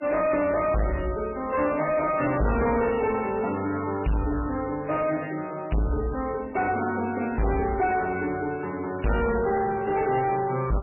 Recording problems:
codec artefacts; MP3, log-spectral distance 4 dB, nothing above 2.5 kHz
distortion; soft clipping, signal-to-distortion ratio 7 dB

